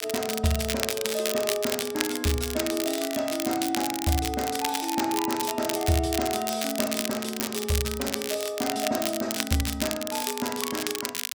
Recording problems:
crackle; vinyl, SNR 3 dB

